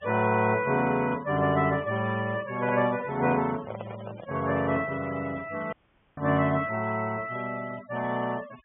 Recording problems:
treble missing; nothing above 3.5 kHz
noise reduction artefacts; signal-to-artefact ratio 20 dB
microphone handling noise; from 2.5 to 4.5 s; peak -4 dB vs average level
dropout; at 5.5 s

